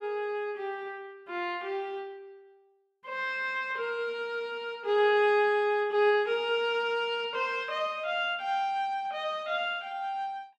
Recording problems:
none

